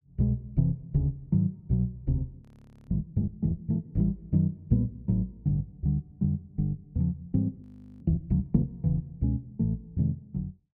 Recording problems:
frozen audio; at 2.5 s and at 7.5 s

